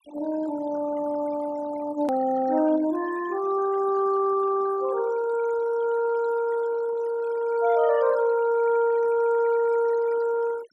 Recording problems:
noise reduction artefacts; signal-to-artefact ratio 18 dB
hard cut with a click; at 2 s

